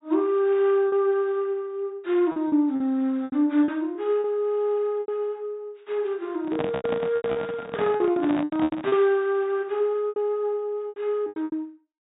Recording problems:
treble missing; nothing above 4 kHz
lost packets; 10% of the sound replaced, filled with repeated pitch periods
microphone handling noise; from 6.5 to 9 s; peak -2 dB vs average level

